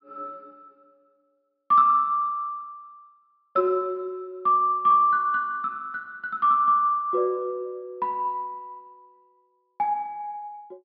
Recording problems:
low-pass filter; nothing above 5.5 kHz

